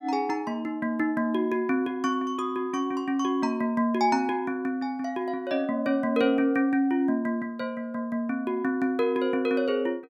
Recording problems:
none

